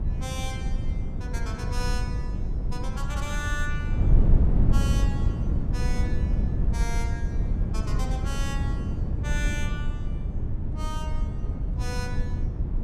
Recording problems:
wind on the microphone; below 110 Hz, SNR -9 dB

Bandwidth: 15 kHz